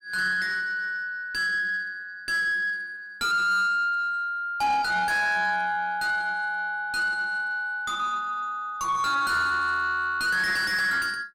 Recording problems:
distorted audio; soft clipping, signal-to-distortion ratio 7 dB

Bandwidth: 16 kHz